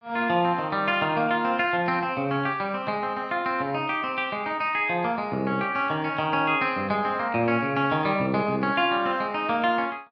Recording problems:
none

